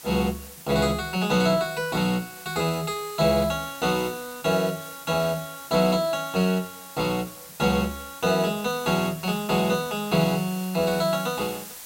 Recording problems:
background hiss; slope 0 dB per octave, SNR 15 dB

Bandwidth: 16 kHz